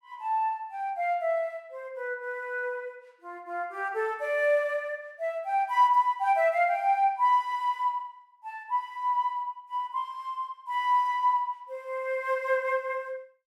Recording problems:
none

